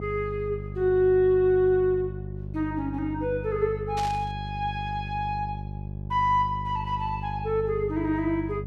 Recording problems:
hum; 50 Hz, harmonics up to 600 Hz, SNR 9 dB
burst of static; at 4 s; peak -7 dB vs average level

